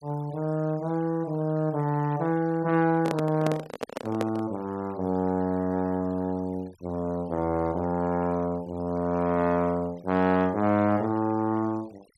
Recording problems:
denoising artefacts; signal-to-artefact ratio 26 dB
handling noise; from 3 to 4.5 s; peak 0 dB vs average level

